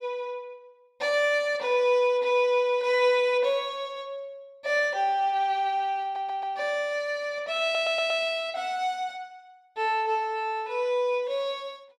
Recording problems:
stutter; at 6 s and at 7.5 s

